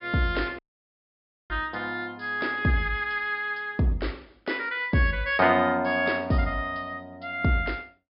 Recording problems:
low-pass filter; nothing above 5.5 kHz
audio cutting out; at 0.5 s for 1 s

